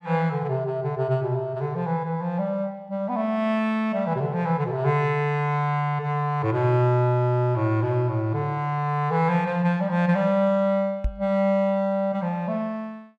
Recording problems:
knock on the microphone; at 11 s; peak +1 dB vs average level

